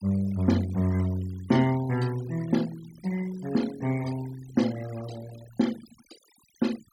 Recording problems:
noise reduction artefacts; signal-to-artefact ratio 18 dB

